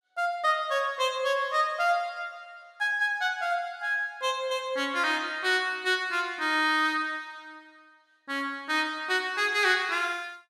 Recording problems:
none

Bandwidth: 14.5 kHz